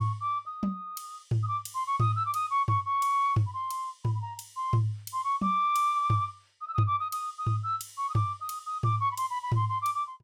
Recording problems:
none

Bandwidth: 17 kHz